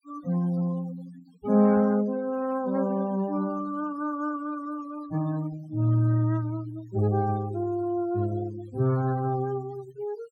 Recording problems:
noise reduction artefacts; signal-to-artefact ratio 20 dB

